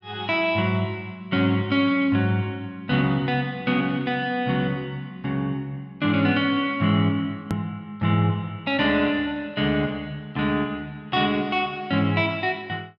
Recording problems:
click at an edit; at 7.5 s

